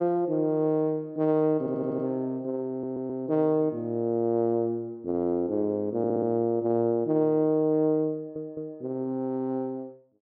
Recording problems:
audio stuttering; 4 times, first at 1.5 s

